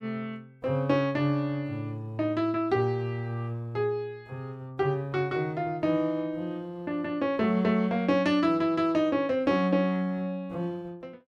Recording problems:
none

